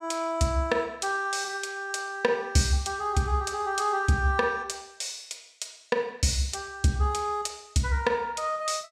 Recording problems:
none

